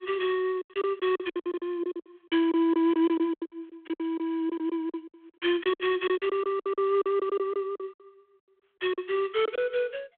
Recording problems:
phone line; 260 Hz to 3.4 kHz, G.726
packet loss; 17% of the sound replaced, filled with silence

